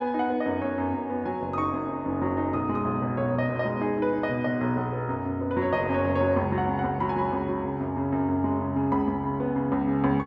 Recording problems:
none

